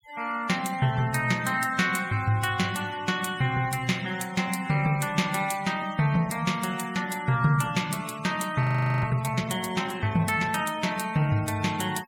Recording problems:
denoising artefacts; signal-to-artefact ratio 18 dB
frozen audio; at 8.5 s

